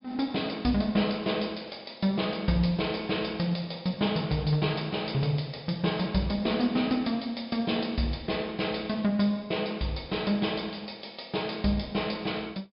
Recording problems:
treble cut off; nothing above 5.5 kHz

